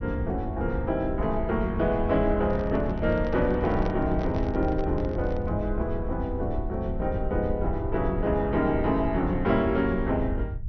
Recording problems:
treble missing; nothing above 6.1 kHz
low-frequency rumble; below 88 Hz, SNR 6 dB
microphone handling noise; from 2.5 to 5.5 s; peak -4 dB vs average level

